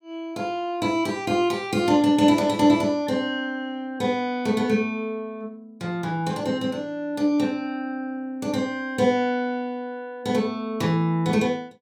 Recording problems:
none

